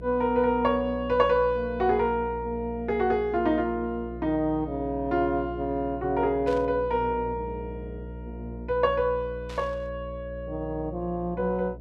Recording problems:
electrical hum; 60 Hz, harmonics up to 660 Hz, SNR 13 dB
static burst; at 6.5 s and at 9.5 s; peak -13 dB vs average level

